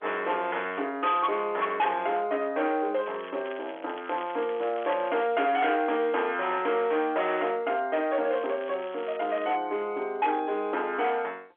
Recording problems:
phone line; 280 Hz to 3.5 kHz, G.711
distortion; hard clipping, signal-to-distortion ratio 11 dB
crackling; from 3 to 5.5 s and from 8.5 to 9.5 s; loose cable, SNR 19 dB

